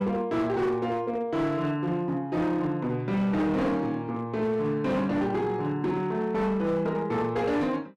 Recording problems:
distorted audio; hard clipping, signal-to-distortion ratio 11 dB

